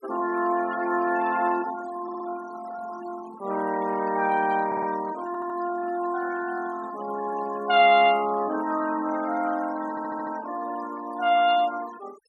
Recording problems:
denoising artefacts; signal-to-artefact ratio 16 dB
audio stuttering; 4 times, first at 2 s

